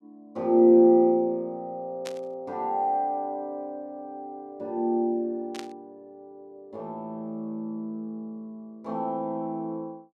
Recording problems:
static burst; at 2 s and at 5.5 s; peak -8 dB vs average level

